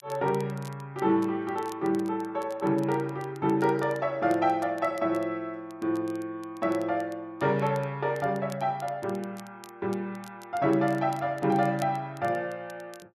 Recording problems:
crackle; vinyl, SNR 25 dB

